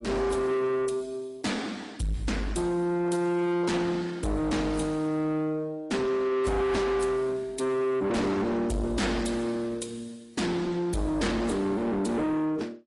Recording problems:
codec artefacts; MP3, then AAC, log-spectral distance 3 dB, nothing above 11 kHz
distortion; soft clipping, signal-to-distortion ratio 7 dB

